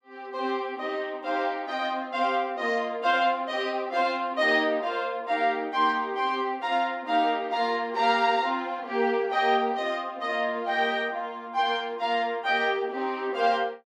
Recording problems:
none

